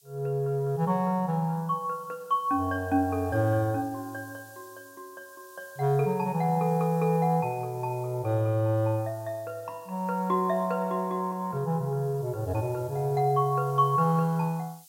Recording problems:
background hiss; SNR 25 dB

